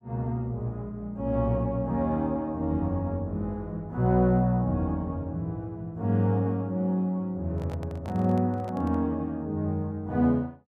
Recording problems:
handling noise; from 7.5 to 9 s; peak -11 dB vs average level

